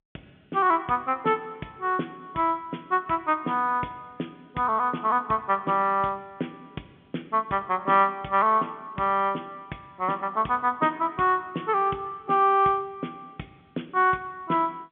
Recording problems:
phone line; 150 Hz to 3.5 kHz, G.711

